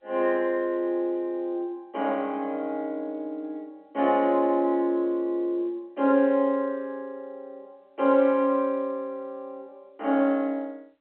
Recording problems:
telephone audio; 240 Hz to 3.3 kHz, G.711

